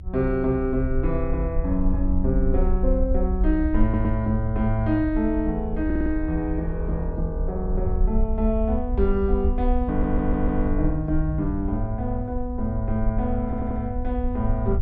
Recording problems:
low-frequency rumble; below 66 Hz, SNR 4 dB
wind noise; below 66 Hz, SNR 7 dB
stutter; 4 times, first at 4 s

